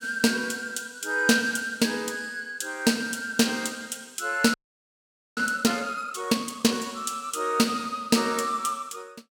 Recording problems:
frozen audio; at 4.5 s for 1 s

